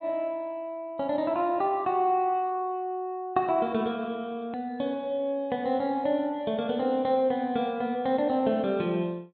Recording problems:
treble cut off; nothing above 4 kHz
hard cut with a click; at 4.5 s

